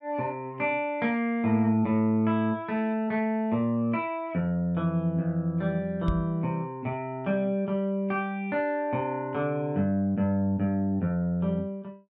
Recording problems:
microphone thump; at 6 s; peak +2 dB vs average level

